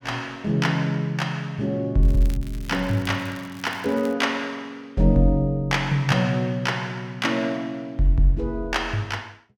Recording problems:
crackling; from 2 to 4 s; loose cable, SNR 22 dB

